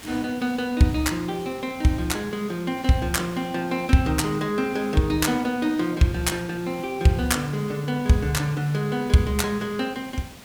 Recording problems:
background hiss; slope -3 dB per octave, SNR 18 dB

